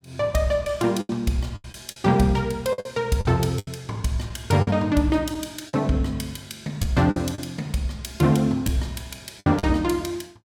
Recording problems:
lost packets; 7% of the sound replaced, filled with the last packet

